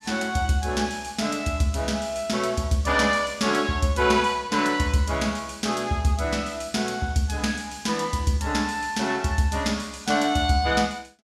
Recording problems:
none

